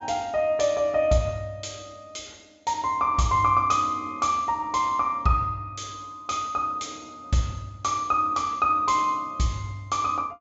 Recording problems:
treble cut off; nothing above 8 kHz

